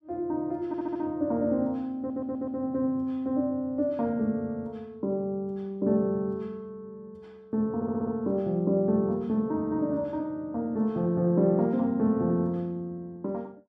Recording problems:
stutter; at 0.5 s, at 2 s and at 8 s

